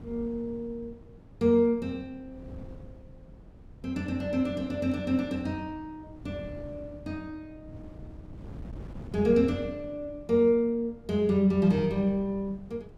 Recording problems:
wind on the microphone; below 220 Hz, SNR 19 dB

